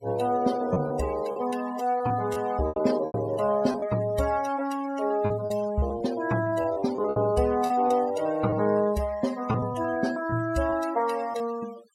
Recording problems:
noise reduction artefacts; signal-to-artefact ratio 17 dB
packet loss; 9% of the sound replaced, filled with repeated pitch periods

